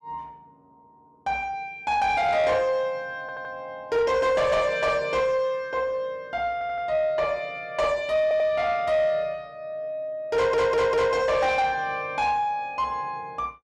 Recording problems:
distortion; soft clipping, signal-to-distortion ratio 12 dB
audio stuttering; 4 times, first at 3 s

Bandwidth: 12.5 kHz